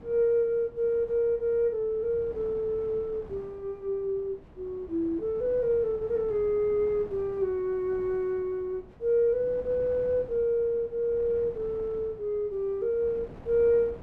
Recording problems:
wind noise; below 470 Hz, SNR 20 dB

